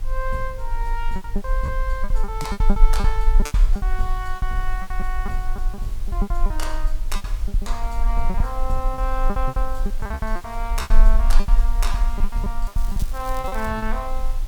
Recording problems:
mains hum; 50 Hz, harmonics up to 600 Hz, SNR 13 dB
hiss; slope -2 dB per octave, SNR 15 dB
low-frequency rumble; below 38 Hz, strongest tone 20 Hz, SNR -5 dB
lost packets; 16% of the sound replaced, filled with repeated pitch periods
crackling; from 13 to 14 s; loose cable, SNR 13 dB

